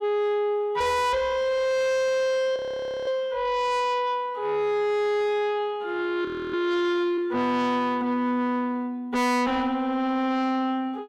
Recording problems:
distorted audio; soft clipping, signal-to-distortion ratio 7 dB
audio freezing; at 2.5 s for 0.5 s and at 6.5 s

